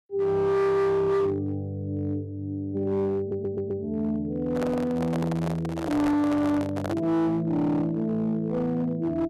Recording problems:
distortion; hard clipping, signal-to-distortion ratio 10 dB
audio stuttering; at 3 s
microphone handling noise; from 4.5 to 7 s; peak -1 dB vs average level

